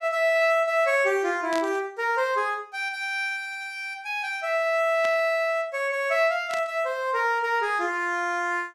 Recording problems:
static burst; at 1.5 s, at 5 s and at 6.5 s; peak -7 dB vs average level

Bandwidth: 14.5 kHz